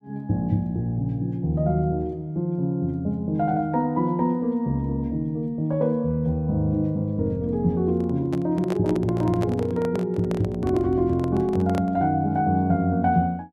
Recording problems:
microphone handling noise; from 8 to 12 s; peak -4 dB vs average level

